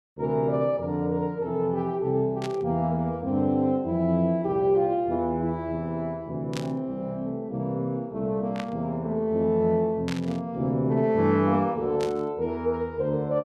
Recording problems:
burst of static; 5 times, first at 2.5 s; peak -5 dB vs average level

